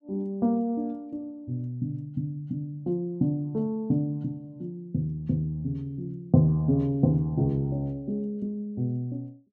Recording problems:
none

